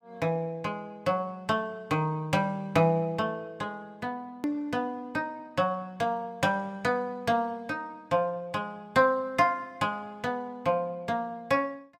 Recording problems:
click at an edit; at 4.5 s

